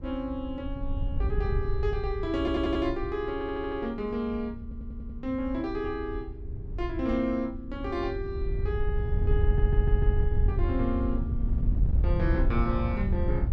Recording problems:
wind noise; below 84 Hz, SNR -1 dB
stutter; 4 times, first at 2.5 s

